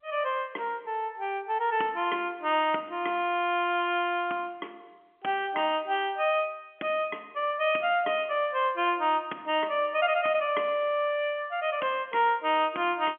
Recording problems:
telephone audio; 240 Hz to 3.4 kHz, G.711

